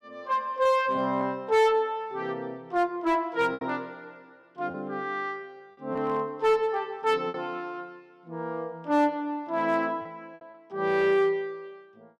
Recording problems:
distorted audio; hard clipping, uneven, signal-to-distortion ratio 11 dB
packet loss; 3% of the sound replaced, filled with repeated pitch periods

